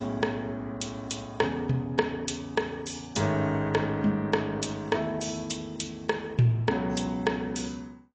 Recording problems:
codec artefacts; AAC, log-spectral distance 4 dB, nothing above 8 kHz

